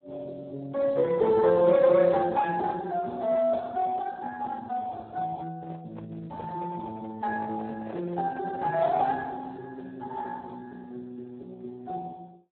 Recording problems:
telephone audio; 240 Hz to 2.2 kHz, Speex
handling noise; from 5.5 to 9 s; peak -9 dB vs average level

